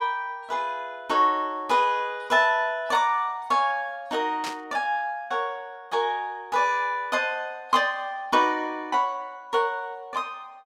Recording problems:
static burst; at 4.5 s; peak -5 dB vs average level

